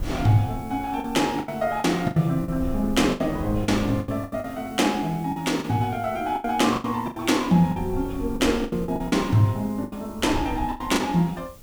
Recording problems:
background hiss; slope +1 dB per octave, SNR 25 dB
wind on the microphone; below 100 Hz, SNR 15 dB
lost packets; 12% of the sound replaced, filled with the last packet

